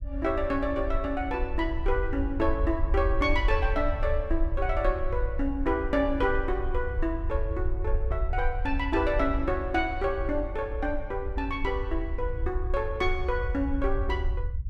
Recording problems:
rumble; below 62 Hz, SNR 3 dB

